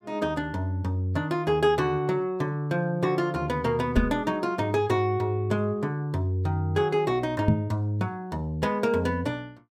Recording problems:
knock on the microphone; at 4 s and at 7.5 s; peak +8 dB vs average level

